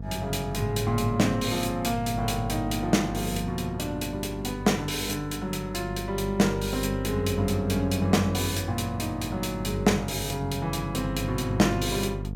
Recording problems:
hum; 50 Hz, harmonics up to 500 Hz, SNR 9 dB

